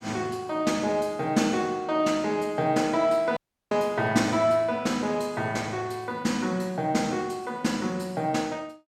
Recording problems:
dropout; at 3.5 s

